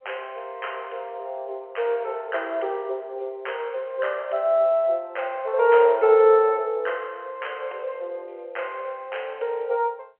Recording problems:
phone line; 340 Hz to 3.2 kHz, G.711

